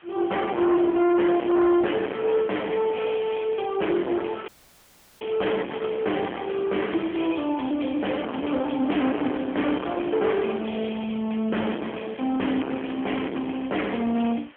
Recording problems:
telephone audio; 190 Hz to 3.2 kHz, AMR-NB
distorted audio; hard clipping, uneven, signal-to-distortion ratio 6 dB
background hiss; SNR 25 dB
dropout; at 4.5 s for 0.5 s
crackle; from 8 to 11 s and from 11 to 14 s; loose cable, SNR 27 dB

